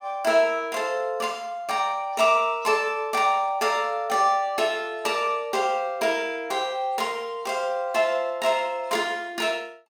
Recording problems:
none

